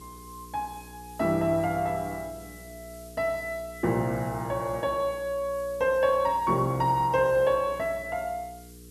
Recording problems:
hum; 60 Hz, harmonics up to 480 Hz, SNR 21 dB
background hiss; slope +4 dB per octave, SNR 23 dB

